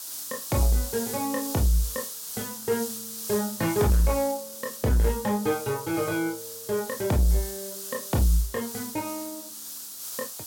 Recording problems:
distortion; soft clipping, signal-to-distortion ratio 11 dB
hiss; SNR 7 dB

